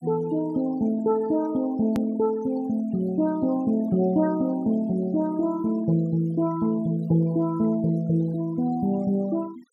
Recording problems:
noise reduction artefacts; signal-to-artefact ratio 23 dB
edit click; at 2 s

